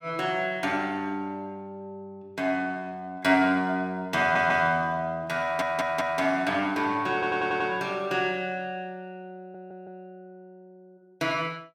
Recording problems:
stutter; 4 times, first at 4 s

